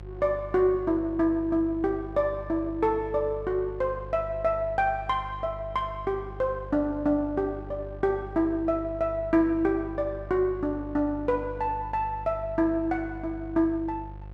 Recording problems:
hum; 50 Hz, harmonics up to 700 Hz, SNR 14 dB

